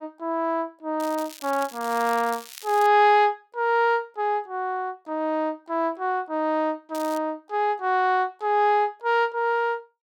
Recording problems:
crackling; from 1 to 3 s and at 7 s; loose cable, SNR 17 dB

